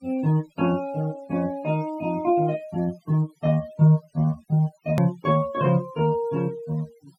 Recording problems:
noise reduction artefacts; signal-to-artefact ratio 25 dB
hard cut with a click; at 5 s

